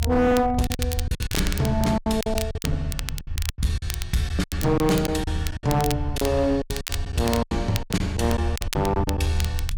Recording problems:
distorted audio; hard clipping, signal-to-distortion ratio 12 dB
rumble; below 80 Hz, SNR 5 dB
crackle; vinyl, SNR 10 dB
lost packets; 14% of the sound replaced, filled with silence

